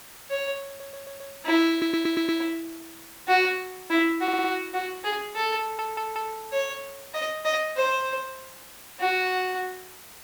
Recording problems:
hiss; slope -1 dB per octave, SNR 17 dB
audio stuttering; 4 times, first at 0.5 s

